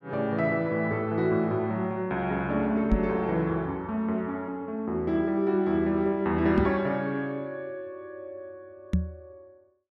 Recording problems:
knock on the microphone; at 3 s, at 6.5 s and at 9 s; peak +6 dB vs average level

